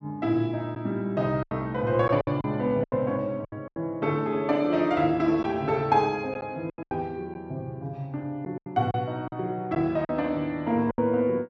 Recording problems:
lost packets; 8% of the sound replaced, filled with silence

